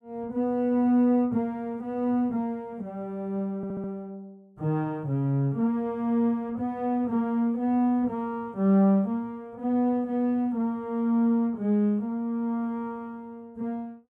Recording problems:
stutter; at 3.5 s

